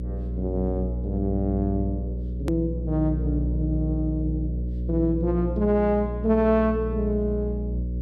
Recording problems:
hum; 60 Hz, harmonics up to 540 Hz, SNR 3 dB
hard cut with a click; at 2.5 s

